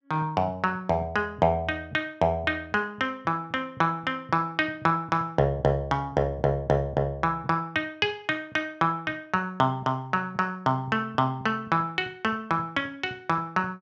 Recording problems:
none

